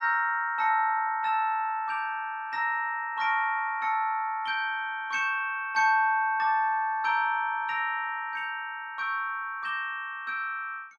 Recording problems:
none

